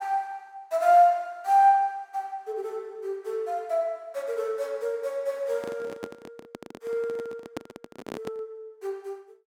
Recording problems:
microphone handling noise; from 5.5 to 8.5 s; peak -4 dB vs average level

